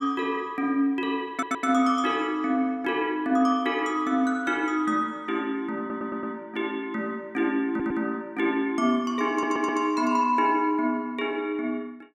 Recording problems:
stutter; 4 times, first at 1.5 s

